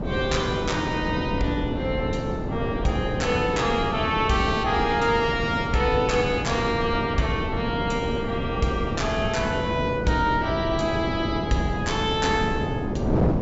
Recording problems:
treble cut off; nothing above 8 kHz
wind noise; below 410 Hz, SNR 3 dB

